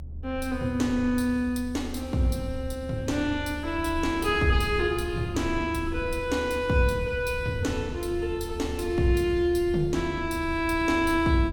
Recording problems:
rumble; below 80 Hz, SNR 11 dB

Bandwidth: 17 kHz